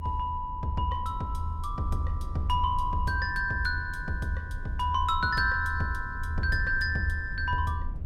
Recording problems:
low-frequency rumble; below 80 Hz, SNR 5 dB

